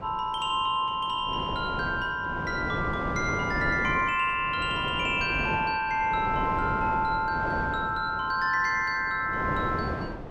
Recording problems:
wind on the microphone; below 650 Hz, SNR 8 dB

